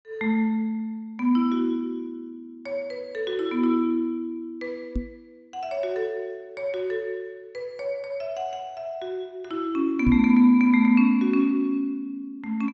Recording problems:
treble cut off; nothing above 8 kHz
microphone thump; at 5 s and at 10 s; peak +2 dB vs average level

